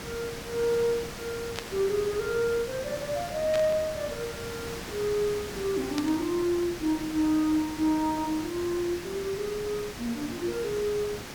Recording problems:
hiss; slope -3 dB per octave, SNR 9 dB
burst of static; at 1.5 s, at 3.5 s and at 6 s; peak -2 dB vs average level

